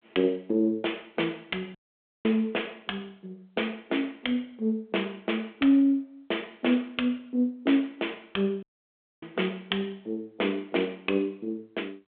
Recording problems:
telephone audio; 300 Hz to 3.5 kHz, G.726
dropout; at 2 s for 0.5 s and at 8.5 s for 0.5 s

